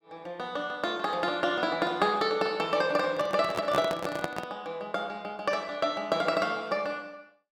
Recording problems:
handling noise; from 3 to 4.5 s; peak +2 dB vs average level

